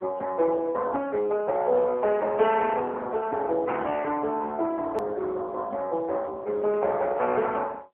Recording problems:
telephone audio; 300 Hz to 3.2 kHz, AMR-NB
edit click; at 5 s

